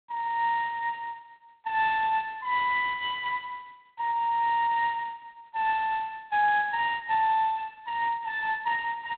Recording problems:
telephone audio; 990 Hz to 2 kHz, G.726

